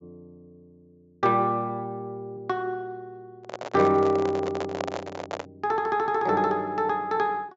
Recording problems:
treble missing; nothing above 7.6 kHz
handling noise; from 3.5 to 5.5 s; peak -1 dB vs average level

